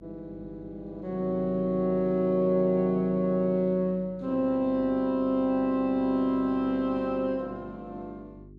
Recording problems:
hum; 50 Hz, harmonics up to 400 Hz, SNR 23 dB

